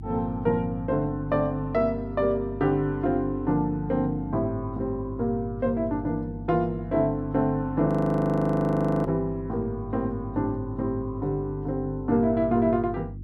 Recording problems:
mains hum; 50 Hz, harmonics up to 350 Hz, SNR 12 dB
audio freezing; at 8 s for 1 s

